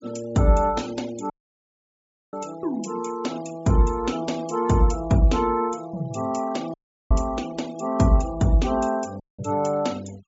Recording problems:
treble cut off; nothing above 8 kHz
denoising artefacts; signal-to-artefact ratio 21 dB
dropout; at 1.5 s for 1 s, at 6.5 s and at 9 s

